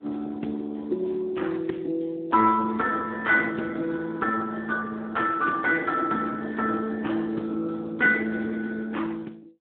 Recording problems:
phone line; 240 Hz to 3.6 kHz, Speex

